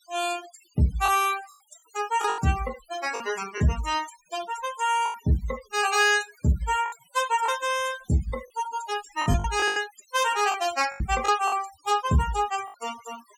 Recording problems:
denoising artefacts; signal-to-artefact ratio 15 dB
packet loss; 7% of the sound replaced, filled with the last packet

